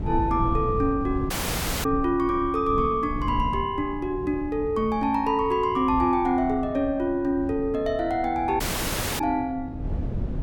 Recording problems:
wind on the microphone; below 150 Hz, SNR 10 dB
audio cutting out; at 1.5 s for 0.5 s and at 8.5 s for 0.5 s

